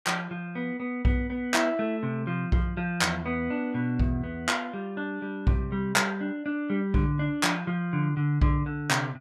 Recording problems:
none

